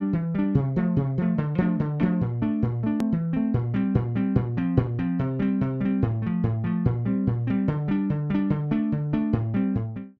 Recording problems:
edit click; at 3 s

